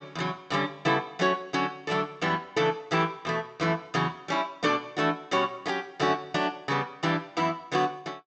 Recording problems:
treble missing; nothing above 8 kHz

